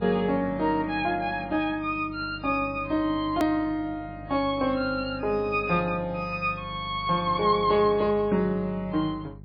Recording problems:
lossy codec; MP3, log-spectral distance 2 dB, nothing above 18.9 kHz
mains hum; 50 Hz, harmonics up to 600 Hz, SNR 17 dB
hard cut with a click; at 3.5 s

